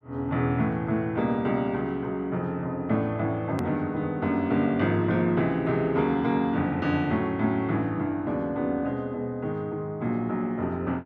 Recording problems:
click at an edit; at 3.5 s

